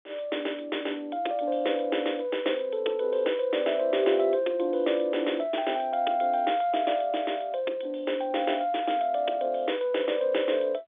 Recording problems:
phone line; 280 Hz to 3.6 kHz, G.711

